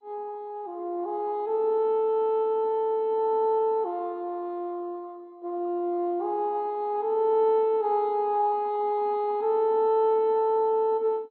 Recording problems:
lossy compression; MP2, log-spectral distance 2 dB, nothing above 3.8 kHz

